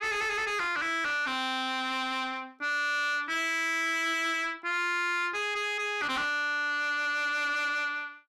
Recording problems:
distortion; soft clipping, signal-to-distortion ratio 7 dB

